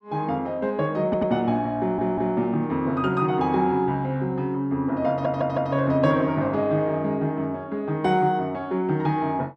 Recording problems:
audio stuttering; at 1 s, at 2 s and at 5 s

